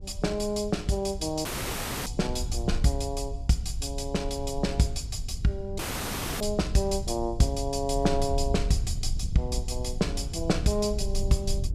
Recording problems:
wind noise; below 72 Hz, SNR 6 dB
audio cutting out; at 1.5 s for 0.5 s and at 6 s for 0.5 s

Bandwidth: 14.5 kHz